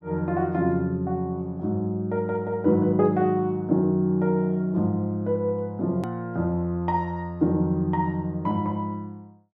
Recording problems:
click at an edit; at 6 s

